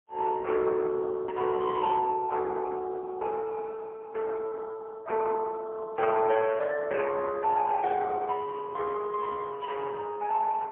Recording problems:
telephone audio; 340 Hz to 2.3 kHz, AMR-NB, then MP3

